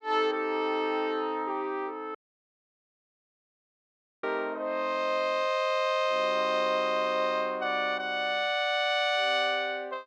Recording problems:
dropout; at 2 s for 2 s

